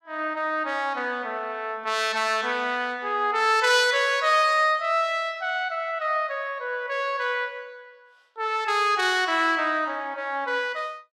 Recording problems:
none

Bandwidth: 16 kHz